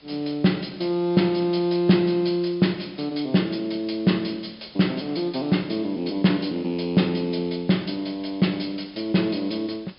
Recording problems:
treble cut off; nothing above 5.5 kHz
hiss; SNR 27 dB

